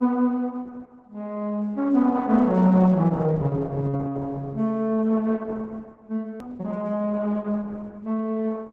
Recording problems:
lossy codec; Opus, log-spectral distance 3 dB
hard cut with a click; at 6.5 s

